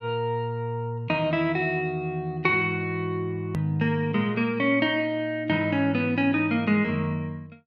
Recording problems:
edit click; at 3.5 s

